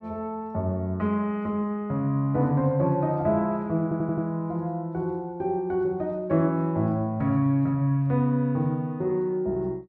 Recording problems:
stutter; at 4 s

